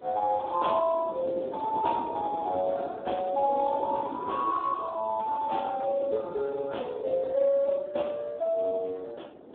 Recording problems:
phone line; 320 Hz to 3.6 kHz, Speex
wind noise; below 540 Hz, SNR 13 dB

